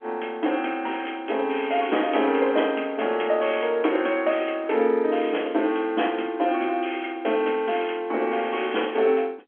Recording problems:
phone line; 240 Hz to 3.3 kHz, G.711

